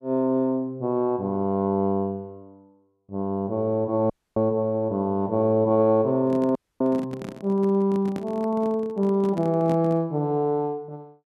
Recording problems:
audio cutting out; at 4 s and at 6.5 s
microphone handling noise; from 6 to 10 s; peak -7 dB vs average level

